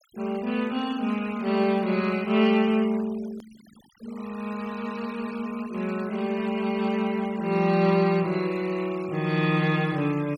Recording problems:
noise reduction artefacts; signal-to-artefact ratio 21 dB
hard cut with a click; at 3.5 s

